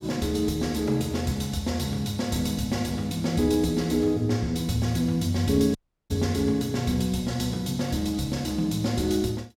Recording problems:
dropout; at 6 s

